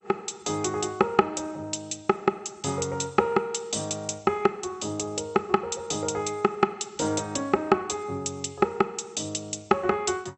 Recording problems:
codec artefacts; MP2, log-spectral distance 6 dB, nothing above 8 kHz

